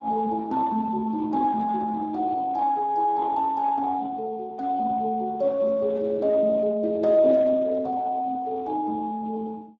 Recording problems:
lossy codec; Speex, log-spectral distance 2 dB

